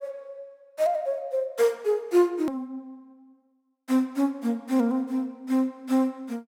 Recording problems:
hard cut with a click; at 2.5 s

